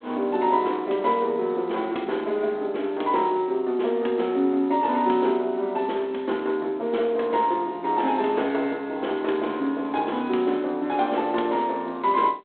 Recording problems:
phone line; 220 Hz to 3.6 kHz, G.726

